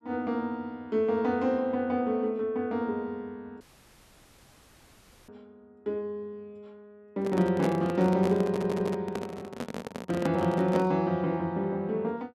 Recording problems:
dropout; at 3.5 s for 1.5 s
microphone handling noise; from 7 to 11 s; peak 0 dB vs average level
audio stuttering; at 8.5 s

